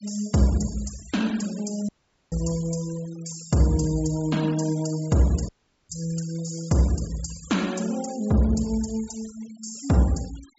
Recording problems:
treble cut off; nothing above 8 kHz
denoising artefacts; signal-to-artefact ratio 20 dB
dropout; at 2 s and at 5.5 s

